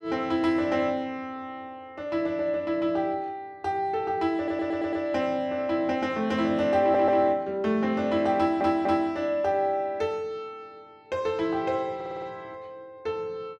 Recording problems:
stutter; 4 times, first at 4.5 s

